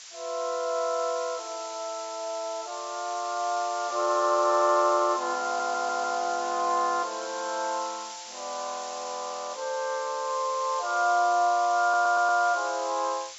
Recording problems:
treble cut off; nothing above 8 kHz
background hiss; slope +5 dB per octave, SNR 12 dB
stutter; at 5.5 s and at 12 s

